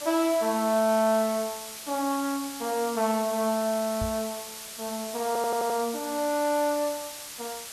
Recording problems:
background hiss; slope +2 dB per octave, SNR 10 dB
microphone bump; at 4 s; peak -2 dB vs average level
audio stuttering; at 5.5 s

